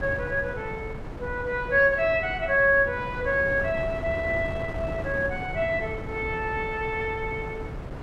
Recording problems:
wind noise; below 470 Hz, SNR 11 dB

